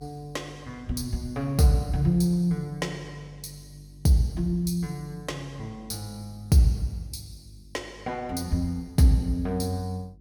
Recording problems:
hum; 50 Hz, harmonics up to 350 Hz, SNR 24 dB

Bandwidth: 17 kHz